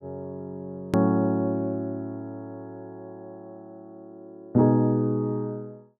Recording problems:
edit click; at 1 s

